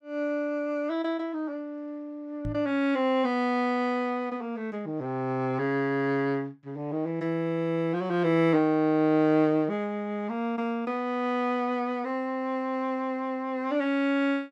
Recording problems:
microphone bump; at 2.5 s; peak -3 dB vs average level

